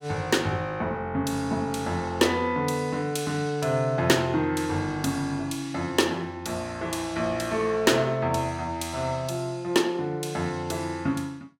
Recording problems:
none

